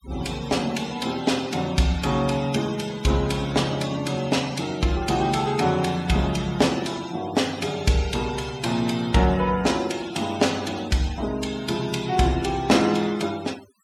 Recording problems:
noise reduction artefacts; signal-to-artefact ratio 17 dB

